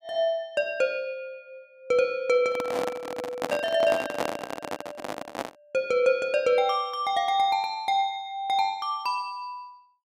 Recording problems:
microphone handling noise; from 2.5 to 5.5 s; peak +1 dB vs average level

